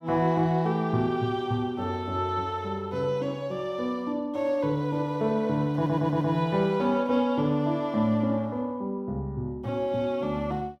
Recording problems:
audio stuttering; at 6 s

